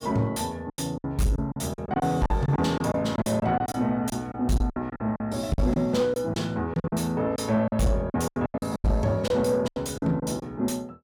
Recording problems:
distortion; soft clipping, signal-to-distortion ratio 10 dB
lost packets; 14% of the sound replaced, filled with silence

